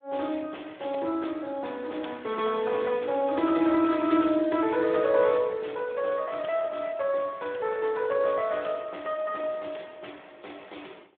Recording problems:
telephone audio; 260 Hz to 3.5 kHz, Speex

